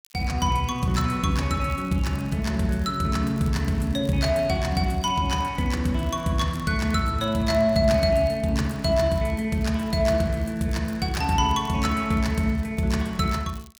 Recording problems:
crackle; vinyl, SNR 28 dB

